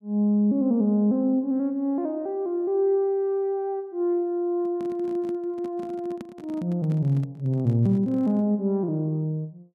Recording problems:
microphone handling noise; from 4.5 to 8.5 s; peak -9 dB vs average level

